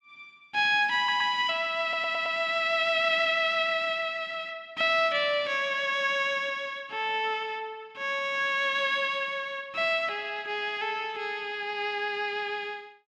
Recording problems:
audio stuttering; at 1 s and at 2 s

